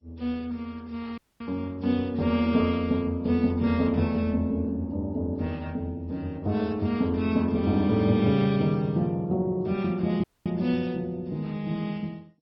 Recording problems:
codec artefacts; Vorbis, then MP2, log-spectral distance 2 dB, nothing above 5.5 kHz
audio cutting out; at 1 s and at 10 s

